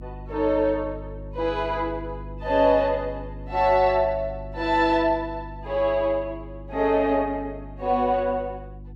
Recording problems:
hum; 50 Hz, harmonics up to 350 Hz, SNR 15 dB

